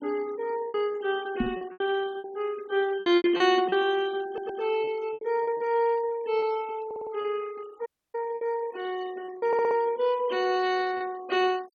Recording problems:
denoising artefacts; signal-to-artefact ratio 21 dB
packet loss; 9% of the sound replaced, filled with repeated pitch periods
microphone bump; at 1.5 s; peak +4 dB vs average level
stutter; at 4.5 s, at 7 s and at 9.5 s
dropout; at 8 s

